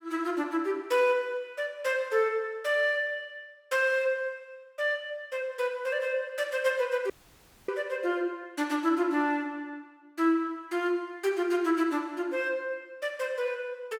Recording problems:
audio cutting out; at 7 s for 0.5 s

